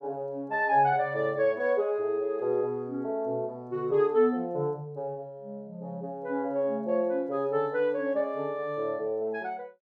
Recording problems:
none

